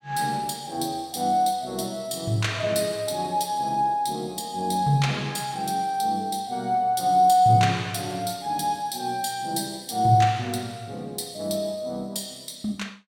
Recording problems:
none

